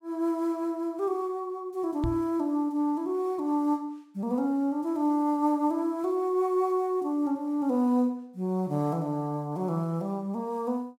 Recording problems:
microphone bump; at 2 s; peak 0 dB vs average level

